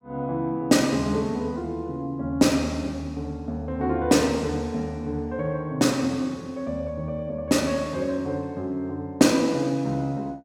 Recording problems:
none

